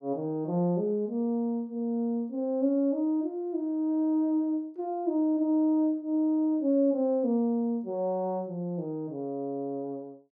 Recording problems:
none

